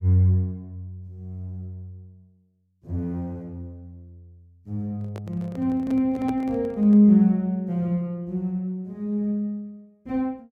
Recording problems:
handling noise; from 5 to 7 s; peak -8 dB vs average level

